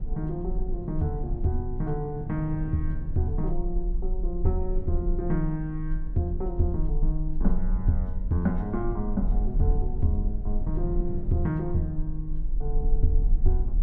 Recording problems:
rumble; below 38 Hz, SNR 2 dB
wind noise; below 180 Hz, SNR 9 dB

